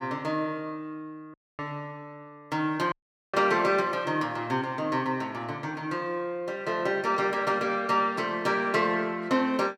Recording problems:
audio cutting out; at 1.5 s and at 3 s

